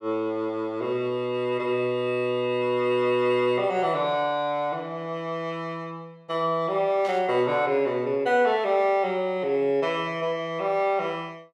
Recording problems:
burst of static; at 7 s; peak -13 dB vs average level

